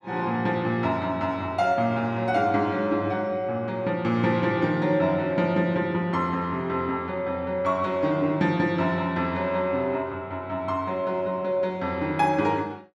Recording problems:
none

